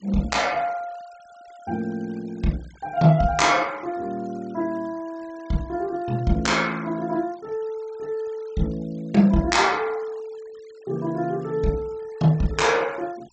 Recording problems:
treble cut off; nothing above 8 kHz
noise reduction artefacts; signal-to-artefact ratio 25 dB

